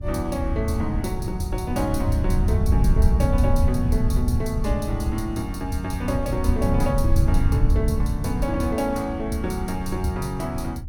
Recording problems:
wind noise; below 100 Hz, SNR -1 dB

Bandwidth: 17.5 kHz